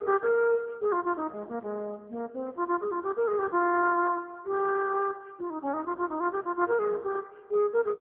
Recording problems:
telephone audio; 260 Hz to 2.3 kHz, AMR-NB

